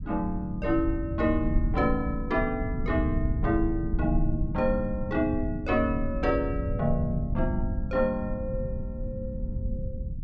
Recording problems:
rumble; below 110 Hz, SNR 4 dB

